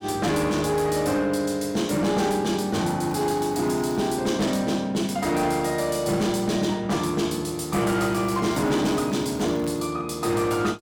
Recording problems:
distortion; hard clipping, signal-to-distortion ratio 12 dB
crackling; from 3 to 4 s and from 8 to 10 s; loose cable, SNR 24 dB

